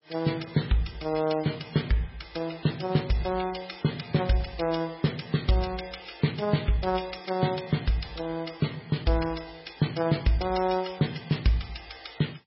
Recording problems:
codec artefacts; MP3, log-spectral distance 7 dB, nothing above 5.5 kHz

